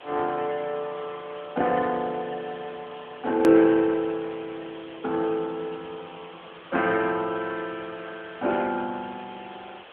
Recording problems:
telephone audio; 240 Hz to 3.8 kHz, AMR-NB
hiss; SNR 19 dB
click at an edit; at 3.5 s

